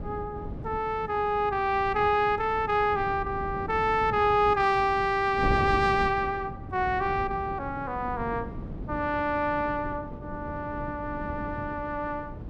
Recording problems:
wind on the microphone; below 280 Hz, SNR 11 dB

